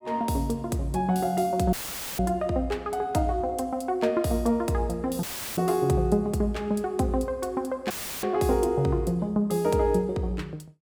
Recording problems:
audio cutting out; at 1.5 s, at 5 s and at 8 s; filled with static

